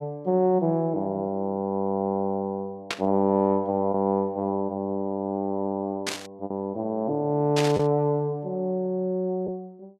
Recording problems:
lost packets; 0.9% of the sound replaced, filled with the last packet
static burst; at 3 s, at 6 s and at 7.5 s; peak +2 dB vs average level

